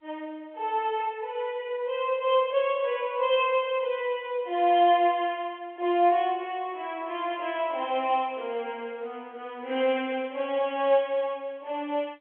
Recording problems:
phone line; 300 Hz to 3.4 kHz, G.711

